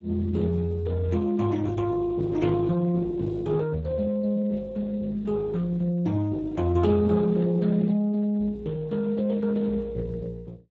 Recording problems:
lossy codec; Speex, log-spectral distance 2 dB

